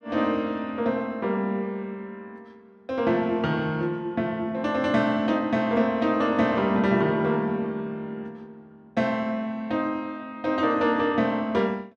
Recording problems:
none

